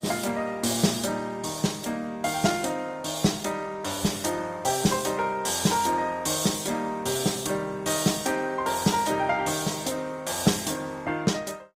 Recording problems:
lossy codec; Opus, log-spectral distance 5 dB, nothing above 15.5 kHz

